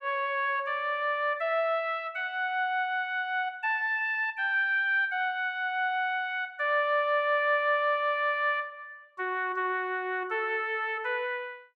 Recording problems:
none

